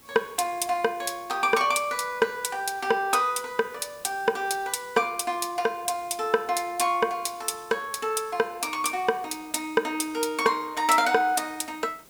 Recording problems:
hiss; slope -3 dB per octave, SNR 25 dB

